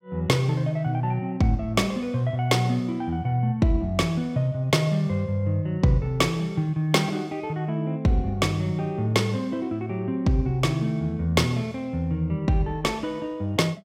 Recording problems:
none

